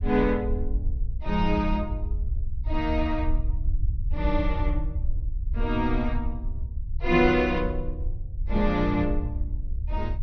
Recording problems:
treble missing; nothing above 5.9 kHz
low-frequency rumble; below 64 Hz, SNR 4 dB

